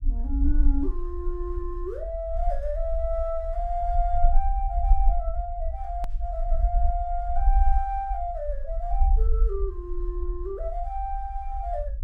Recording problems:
low-frequency rumble; below 48 Hz, SNR -2 dB
edit click; at 6 s

